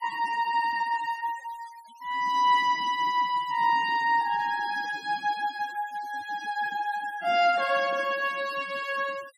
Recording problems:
denoising artefacts; signal-to-artefact ratio 21 dB

